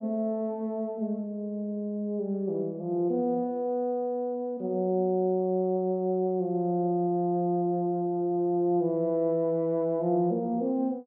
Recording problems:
none

